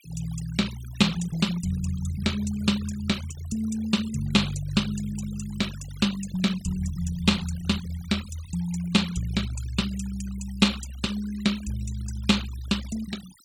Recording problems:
noise reduction artefacts; signal-to-artefact ratio 16 dB

